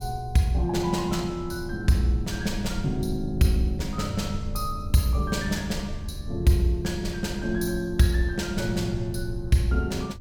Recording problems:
rumble; below 78 Hz, SNR 12 dB

